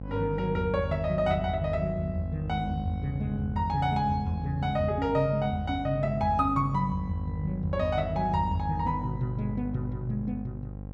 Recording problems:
mains hum; 50 Hz, harmonics up to 800 Hz, SNR 8 dB

